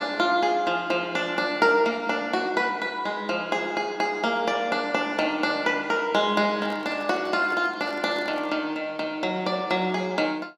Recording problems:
handling noise; from 6.5 to 8.5 s; peak -10 dB vs average level

